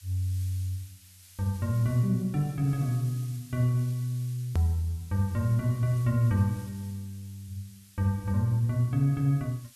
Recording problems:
background hiss; slope +5 dB per octave, SNR 23 dB
edit click; at 4.5 s

